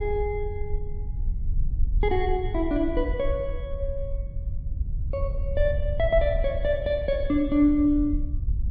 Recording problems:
rumble; below 64 Hz, SNR 5 dB

